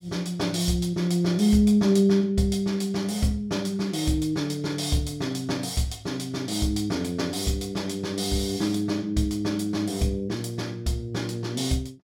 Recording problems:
none

